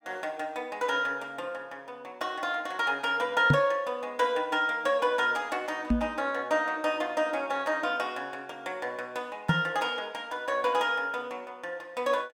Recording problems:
microphone thump; at 3.5 s, at 6 s and at 9.5 s; peak +9 dB vs average level

